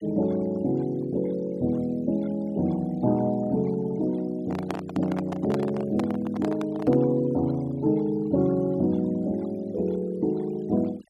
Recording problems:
noise reduction artefacts; signal-to-artefact ratio 23 dB
handling noise; from 4.5 to 7 s; peak -1 dB vs average level

